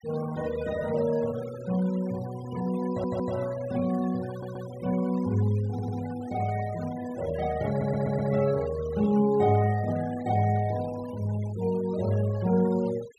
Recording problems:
denoising artefacts; signal-to-artefact ratio 19 dB
audio stuttering; 4 times, first at 3 s

